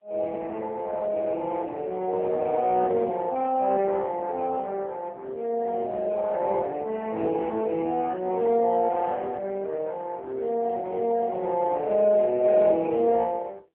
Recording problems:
phone line; 260 Hz to 3 kHz, AMR-NB

